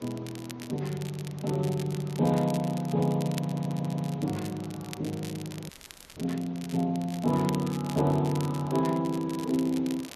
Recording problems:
lossy codec; MP2, then Speex, log-spectral distance 2 dB
background hiss; SNR 21 dB
crackle; vinyl, SNR 16 dB
audio stuttering; at 3.5 s
frozen audio; at 5.5 s

